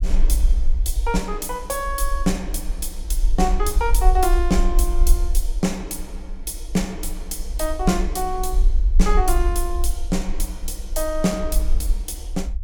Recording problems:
rumble; below 46 Hz, strongest tone 22 Hz, SNR -1 dB

